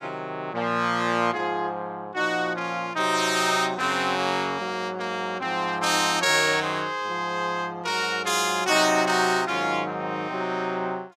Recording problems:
none

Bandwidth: 15 kHz